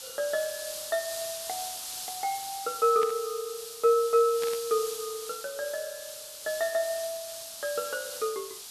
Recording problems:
background hiss; SNR 8 dB
static burst; at 3 s and at 4.5 s; peak -5 dB vs average level

